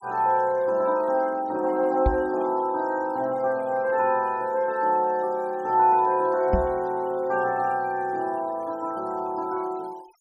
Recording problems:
denoising artefacts; signal-to-artefact ratio 28 dB
microphone bump; at 2 s and at 6.5 s; peak +3 dB vs average level

